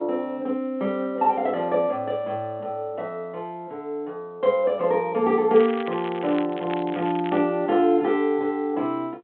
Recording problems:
phone line; 240 Hz to 3.5 kHz, G.726
crackle; from 5.5 to 7.5 s; loose cable, SNR 18 dB

